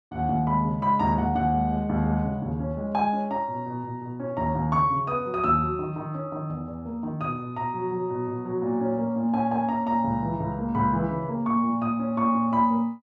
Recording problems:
none

